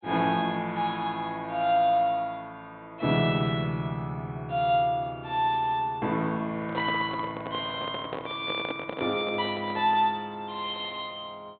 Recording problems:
treble cut off; nothing above 4 kHz
handling noise; from 6.5 to 10 s; peak -2 dB vs average level

